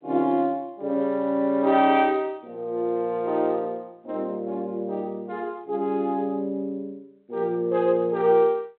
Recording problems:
phone line; 150 Hz to 3.9 kHz, G.726

